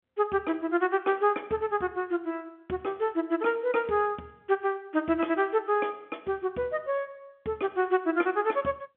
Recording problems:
telephone audio; 190 Hz to 3.5 kHz, G.711

